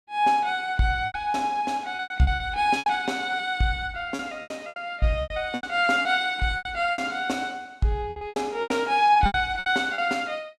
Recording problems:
lost packets; 14% of the sound replaced, filled with repeated pitch periods

